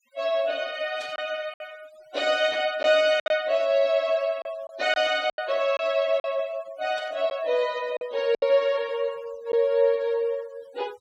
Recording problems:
noise reduction artefacts; signal-to-artefact ratio 24 dB
lost packets; 5% of the sound replaced, filled with silence
static burst; 4 times, first at 1 s; peak -12 dB vs average level

